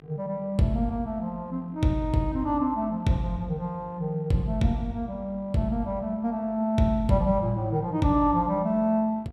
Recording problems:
electrical hum; 50 Hz, harmonics up to 2.4 kHz, SNR 27 dB

